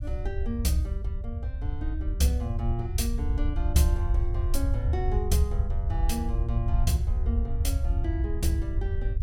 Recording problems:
rumble; below 78 Hz, SNR -1 dB

